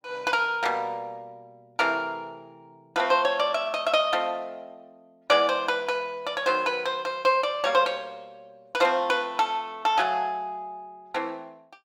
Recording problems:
none

